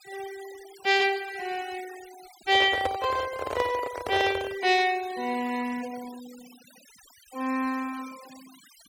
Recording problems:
noise reduction artefacts; signal-to-artefact ratio 19 dB
microphone handling noise; from 2.5 to 4.5 s; peak +1 dB vs average level

